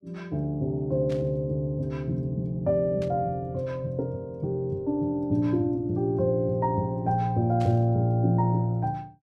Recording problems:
static burst; at 1 s, at 3 s and at 7.5 s; peak -13 dB vs average level

